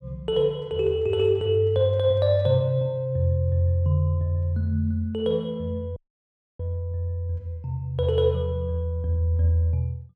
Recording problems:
dropout; at 6 s for 0.5 s

